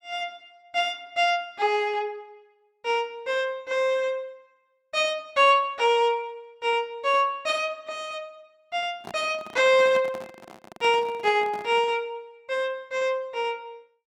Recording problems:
handling noise; from 9 to 12 s; peak -10 dB vs average level

